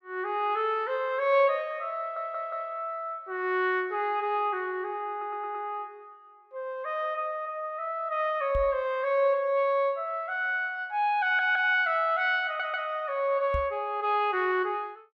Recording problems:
audio stuttering; 4 times, first at 2 s
knock on the microphone; at 8.5 s and at 14 s; peak -2 dB vs average level

